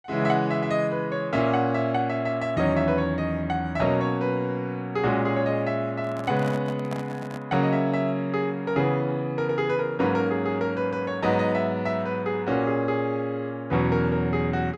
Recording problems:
microphone handling noise; from 6 to 7.5 s; peak -5 dB vs average level

